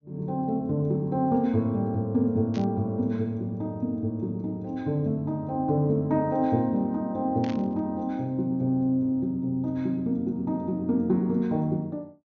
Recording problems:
treble missing; nothing above 6.8 kHz
static burst; at 2.5 s and at 7.5 s; peak -10 dB vs average level

